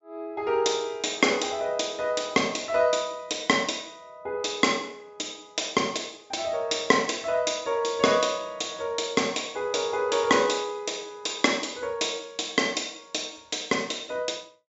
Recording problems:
treble missing; nothing above 8 kHz

